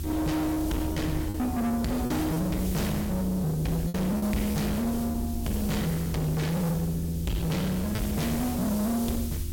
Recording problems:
distorted audio; soft clipping, signal-to-distortion ratio 6 dB
hum; 50 Hz, harmonics up to 350 Hz, SNR 15 dB
background hiss; slope +1 dB per octave, SNR 13 dB
low-frequency rumble; below 180 Hz, strongest tone 80 Hz, SNR 6 dB
packet loss; 3% of the sound replaced, filled with repeated pitch periods

